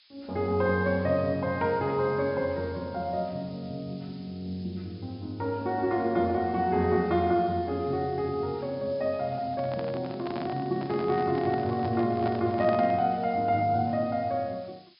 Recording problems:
treble missing; nothing above 5.5 kHz
background hiss; SNR 26 dB
microphone handling noise; from 9.5 to 13 s; peak -2 dB vs average level

